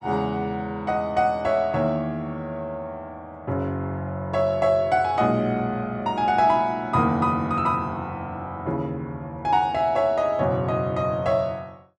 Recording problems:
none

